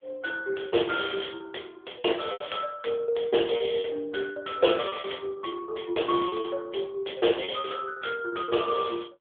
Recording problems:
phone line; 260 Hz to 3.4 kHz, AMR-NB
packet loss; 10% of the sound replaced, filled with repeated pitch periods

